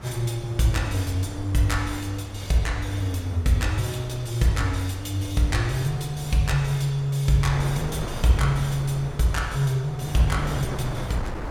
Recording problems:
wind on the microphone; below 590 Hz, SNR 11 dB

